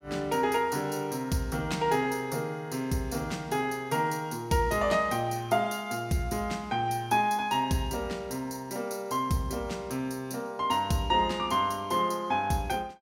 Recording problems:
none

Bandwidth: 16 kHz